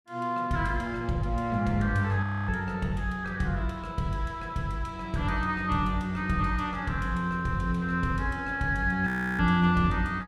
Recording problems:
audio freezing; at 2 s and at 9 s

